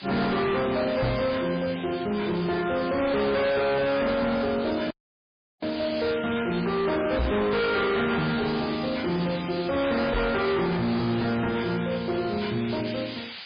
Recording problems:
codec artefacts; MP3, log-spectral distance 13 dB, nothing above 4.1 kHz
distortion; hard clipping, signal-to-distortion ratio 6 dB
hiss; SNR 12 dB
microphone bump; at 1 s, at 7 s and at 10 s; peak +3 dB vs average level
dropout; at 5 s for 0.5 s

